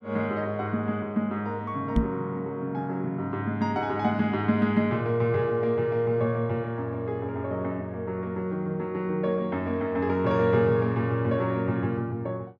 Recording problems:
microphone bump; at 2 s; peak +7 dB vs average level

